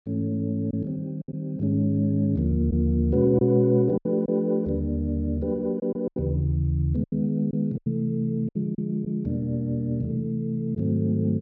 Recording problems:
lost packets; 5% of the sound replaced, filled with silence

